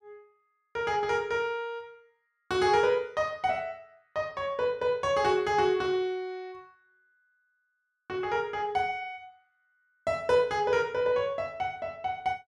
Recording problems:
none

